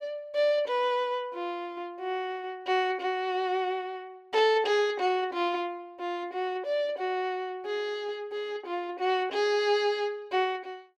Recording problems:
none

